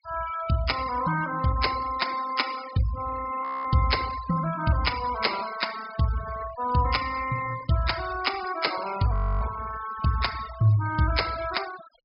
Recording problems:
treble missing; nothing above 5.5 kHz
noise reduction artefacts; signal-to-artefact ratio 14 dB
audio freezing; at 3.5 s and at 9 s

